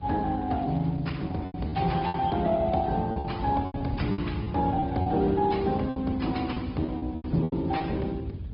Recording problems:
treble missing; nothing above 5.2 kHz
lossy compression; Speex, then Opus, log-spectral distance 2 dB
wind on the microphone; below 140 Hz, SNR 10 dB
packet loss; 10% of the sound replaced, filled with repeated pitch periods

